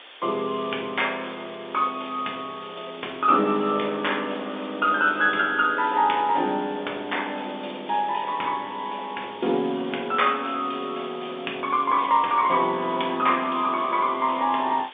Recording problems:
telephone audio; 240 Hz to 3.6 kHz, G.711
background hiss; SNR 19 dB

